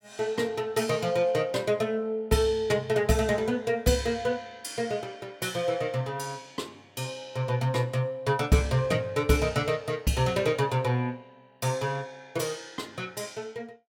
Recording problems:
none

